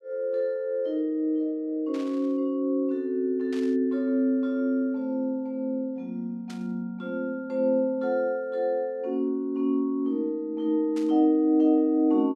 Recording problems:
static burst; 4 times, first at 2 s; peak -14 dB vs average level

